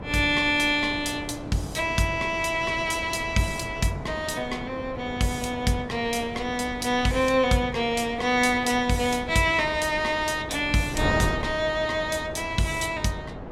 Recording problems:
hum; 60 Hz, harmonics up to 660 Hz, SNR 25 dB
wind on the microphone; below 610 Hz, SNR 12 dB

